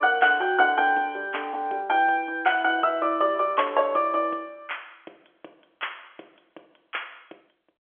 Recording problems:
phone line; 300 Hz to 3.4 kHz, G.711

